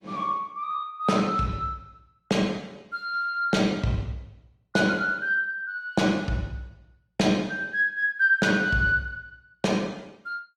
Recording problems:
codec artefacts; Opus, log-spectral distance 2 dB, nothing above 15.5 kHz

